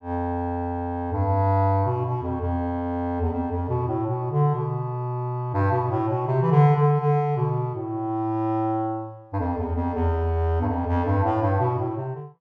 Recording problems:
none

